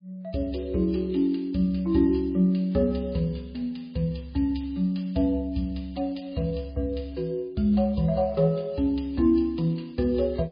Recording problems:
lossy compression; MP3, log-spectral distance 3 dB, nothing above 10.7 kHz

